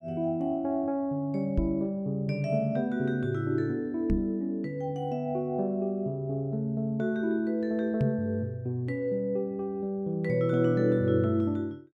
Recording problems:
microphone bump; at 1.5 s, at 4 s and at 8 s; peak +5 dB vs average level

